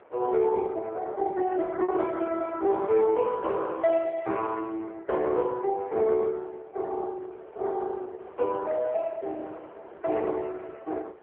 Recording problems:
phone line; 280 Hz to 2.6 kHz, AMR-NB
wind noise; below 920 Hz, SNR 22 dB
packet loss; 1.1% of the sound replaced, filled with repeated pitch periods

